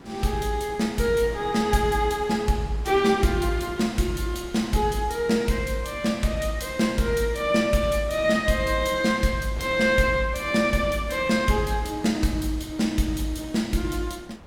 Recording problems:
wind on the microphone; below 860 Hz, SNR 20 dB

